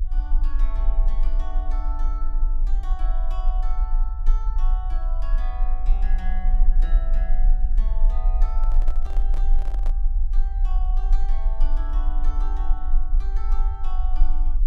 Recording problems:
rumble; below 34 Hz, strongest tone 28 Hz, SNR -16 dB
handling noise; from 8.5 to 10 s; peak +3 dB vs average level

